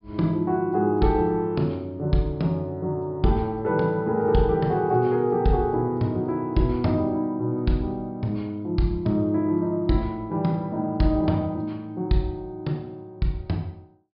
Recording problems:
low-pass filter; nothing above 5.5 kHz

